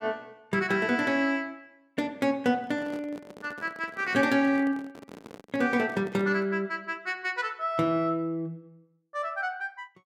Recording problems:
microphone handling noise; from 2.5 to 6.5 s; peak -11 dB vs average level

